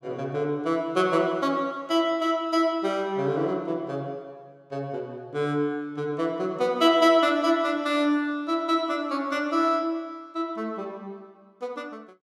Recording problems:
none

